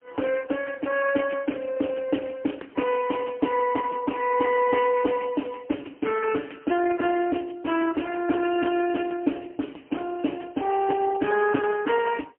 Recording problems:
phone line; 190 Hz to 3.1 kHz, AMR-NB, then MP3

